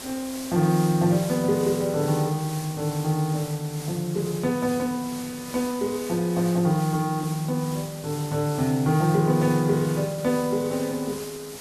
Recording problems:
hiss; slope -2 dB per octave, SNR 13 dB

